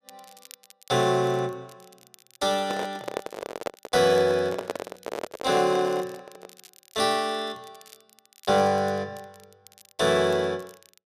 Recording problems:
crackling; vinyl, SNR 27 dB
microphone handling noise; from 2.5 to 6.5 s; peak -1 dB vs average level

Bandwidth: 14.5 kHz